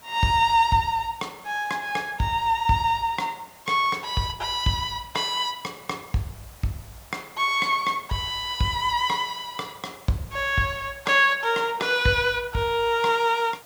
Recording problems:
hiss; SNR 24 dB

